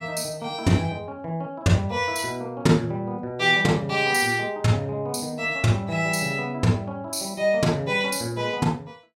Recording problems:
none

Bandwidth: 16 kHz